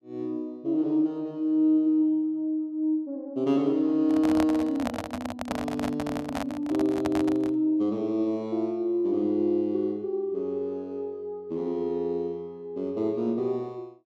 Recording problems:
microphone handling noise; from 4 to 7.5 s; peak 0 dB vs average level

